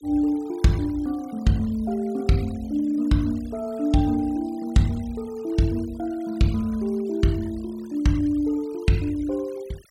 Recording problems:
noise reduction artefacts; signal-to-artefact ratio 24 dB

